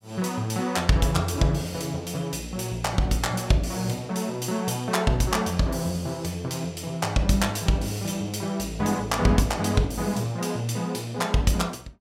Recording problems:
none

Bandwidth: 16.5 kHz